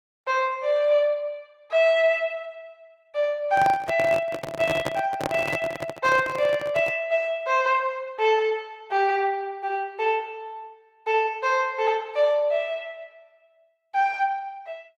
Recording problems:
lossy codec; Opus, log-spectral distance 2 dB
handling noise; from 3.5 to 7 s; peak 0 dB vs average level

